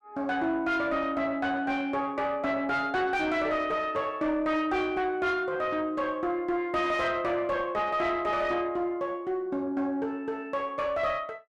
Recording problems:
distortion; soft clipping, signal-to-distortion ratio 10 dB

